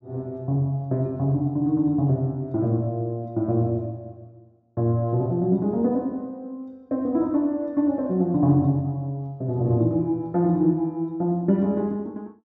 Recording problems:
treble cut off; nothing above 8 kHz

